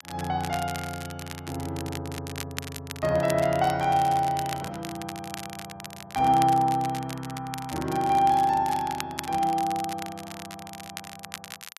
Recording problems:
crackling; vinyl, SNR 14 dB

